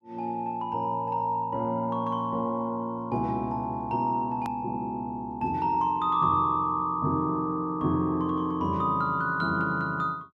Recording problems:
hard cut with a click; at 4.5 s

